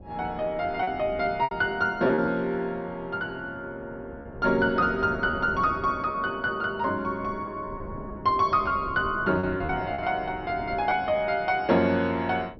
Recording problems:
low-pass filter; nothing above 5.7 kHz
wind noise; below 380 Hz, SNR 17 dB
packet loss; 4% of the sound replaced, filled with repeated pitch periods

